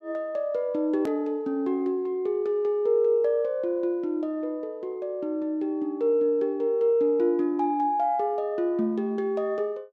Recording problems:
edit click; at 1 s

